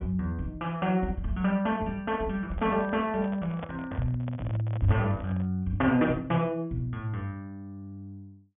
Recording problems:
treble cut off; nothing above 3.5 kHz
microphone handling noise; from 2.5 to 5.5 s; peak -5 dB vs average level

